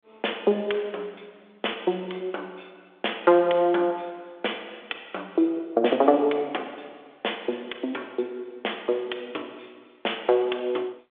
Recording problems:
phone line; 280 Hz to 3.5 kHz, G.726

